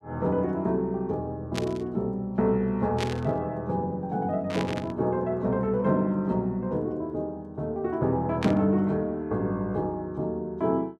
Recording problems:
static burst; 4 times, first at 1.5 s; peak -1 dB vs average level

